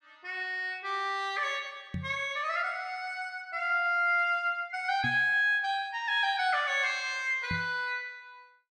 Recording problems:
microphone bump; at 2 s, at 5 s and at 7.5 s; peak -3 dB vs average level

